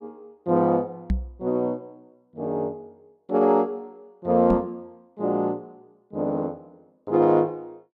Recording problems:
knock on the microphone; at 1 s and at 4.5 s; peak +3 dB vs average level

